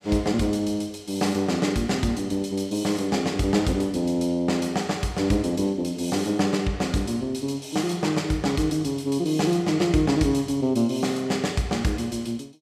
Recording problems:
none

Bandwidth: 15 kHz